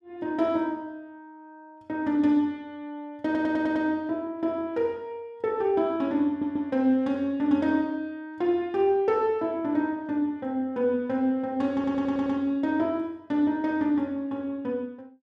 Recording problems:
stutter; at 3.5 s, at 6.5 s and at 12 s

